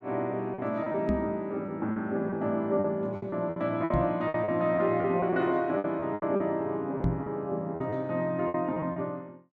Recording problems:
packet loss; 11% of the sound replaced, filled with repeated pitch periods
microphone thump; at 1 s, at 4 s and at 7 s; peak +5 dB vs average level

